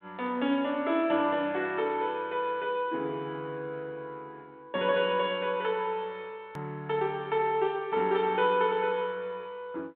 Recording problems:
phone line; 220 Hz to 3.6 kHz, G.726
click at an edit; at 6.5 s

